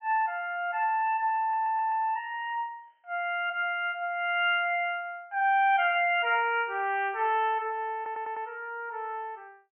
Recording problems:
treble cut off; nothing above 3.1 kHz
audio stuttering; at 1.5 s and at 8 s

